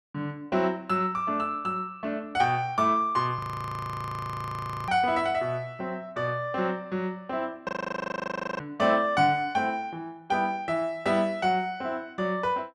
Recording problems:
audio freezing; at 3.5 s for 1.5 s and at 7.5 s for 1 s

